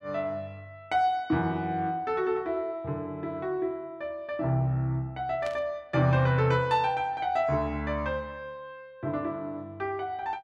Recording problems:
static burst; at 5.5 s; peak -10 dB vs average level

